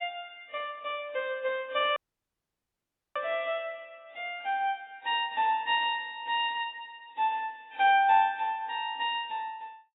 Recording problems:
codec artefacts; AAC, log-spectral distance 3 dB, nothing above 3.8 kHz
dropout; at 2 s for 1 s

